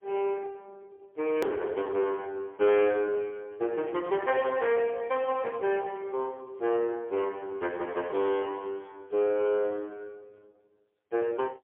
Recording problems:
telephone audio; 320 Hz to 3.3 kHz, AMR-NB, then MP3
distorted audio; soft clipping, signal-to-distortion ratio 12 dB
click at an edit; at 1.5 s

